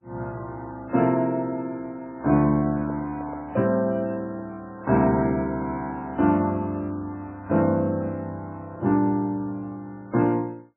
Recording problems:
lossy codec; MP3, log-spectral distance 2 dB, nothing above 2.6 kHz
handling noise; from 2.5 to 4.5 s; peak -7 dB vs average level

